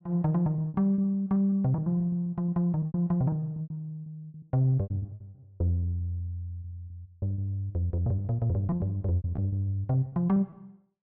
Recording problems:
packet loss; 18% of the sound replaced, filled with repeated pitch periods

